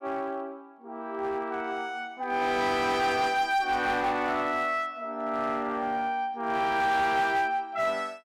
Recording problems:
distortion; hard clipping, uneven, signal-to-distortion ratio 11 dB

